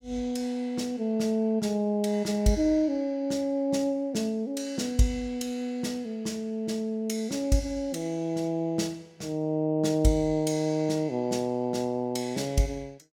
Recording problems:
none

